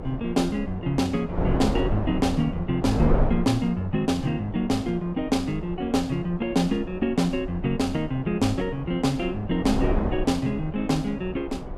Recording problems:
wind on the microphone; below 390 Hz, SNR 7 dB

